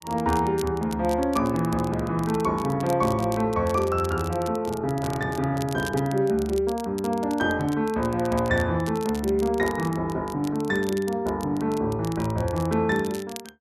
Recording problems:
crackle; vinyl, SNR 18 dB

